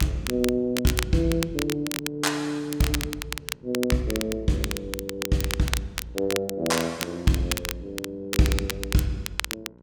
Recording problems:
electrical hum; 60 Hz, harmonics up to 1.1 kHz, SNR 25 dB
crackling; vinyl, SNR 6 dB

